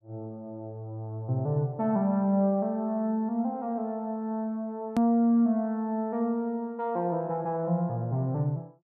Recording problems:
click at an edit; at 5 s

